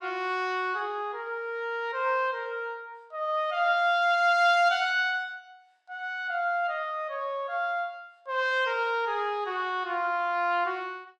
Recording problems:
none

